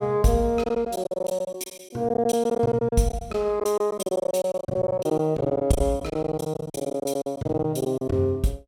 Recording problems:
packet loss; 16% of the sound replaced, filled with silence

